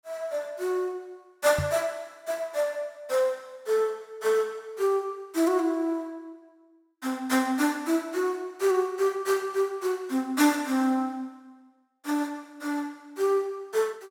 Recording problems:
microphone thump; at 1.5 s; peak +1 dB vs average level

